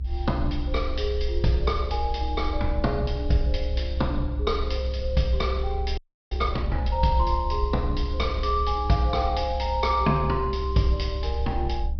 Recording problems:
treble missing; nothing above 5.5 kHz
electrical hum; 50 Hz, harmonics up to 600 Hz, SNR 19 dB
low-frequency rumble; below 66 Hz, strongest tone 64 Hz, SNR 3 dB
frozen audio; at 6 s

